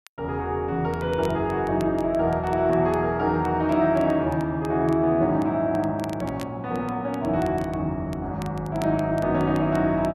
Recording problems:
crackle; vinyl, SNR 25 dB

